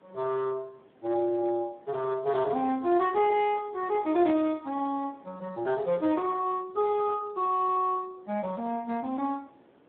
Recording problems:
phone line; 190 Hz to 3.4 kHz, Speex
hiss; SNR 29 dB

